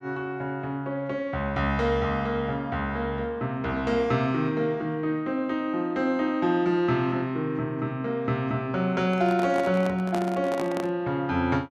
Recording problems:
handling noise; from 9 to 11 s; peak -2 dB vs average level

